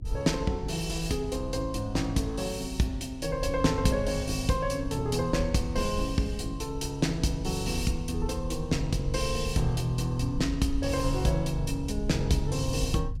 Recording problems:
low-frequency rumble; below 78 Hz, SNR 8 dB

